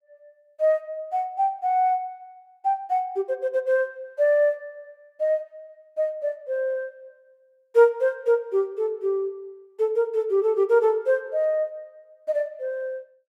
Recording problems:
none

